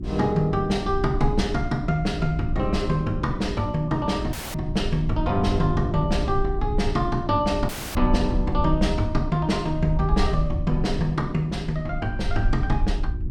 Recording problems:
hum; 60 Hz, harmonics up to 360 Hz, SNR 11 dB
wind noise; below 60 Hz, SNR 6 dB
dropout; at 4.5 s and at 7.5 s

